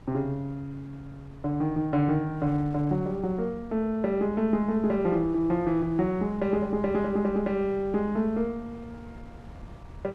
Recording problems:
wind noise; below 250 Hz, SNR 19 dB

